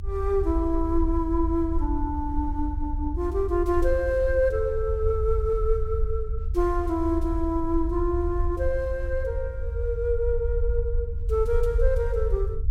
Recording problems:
rumble; below 72 Hz, SNR 3 dB

